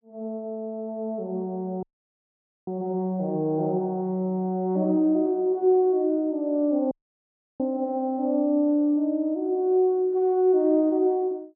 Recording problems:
dropout; at 2 s for 1 s and at 7 s for 0.5 s

